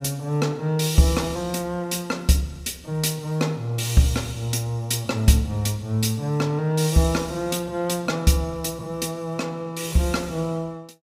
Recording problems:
none

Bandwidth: 15.5 kHz